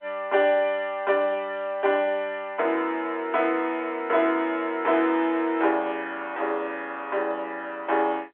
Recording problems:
phone line; 340 Hz to 3.6 kHz, G.711

